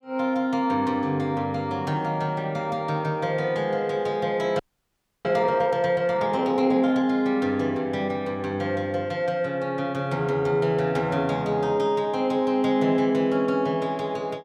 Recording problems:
audio freezing; at 4.5 s for 0.5 s

